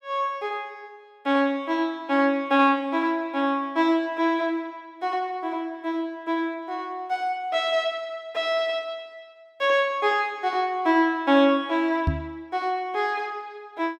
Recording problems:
microphone thump; at 12 s; peak +4 dB vs average level

